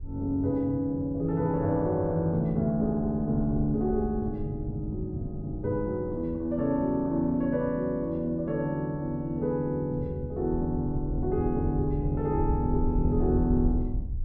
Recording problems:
wind noise; below 74 Hz, SNR 9 dB

